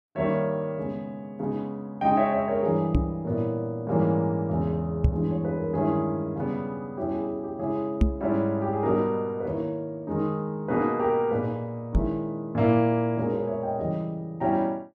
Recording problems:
microphone thump; 4 times, first at 3 s; peak +9 dB vs average level

